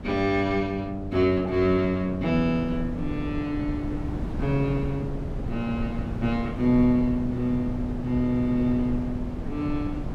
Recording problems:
wind on the microphone; below 230 Hz, SNR 8 dB

